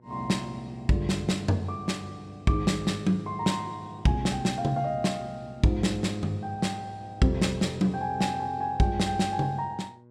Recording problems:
hum; 60 Hz, harmonics up to 1.1 kHz, SNR 26 dB

